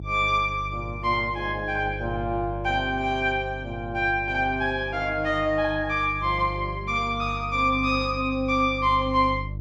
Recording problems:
hum; 50 Hz, harmonics up to 350 Hz, SNR 12 dB

